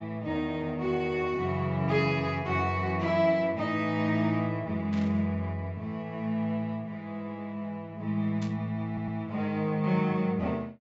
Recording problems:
treble cut off; nothing above 8 kHz
static burst; at 5 s and at 8.5 s; peak -12 dB vs average level
stutter; at 9 s

